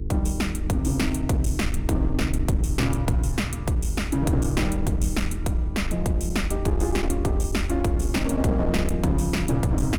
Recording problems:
distortion; hard clipping, uneven, signal-to-distortion ratio 12 dB
hum; 50 Hz, harmonics up to 450 Hz, SNR 12 dB
rumble; below 76 Hz, SNR 6 dB
wind on the microphone; below 150 Hz, SNR 18 dB

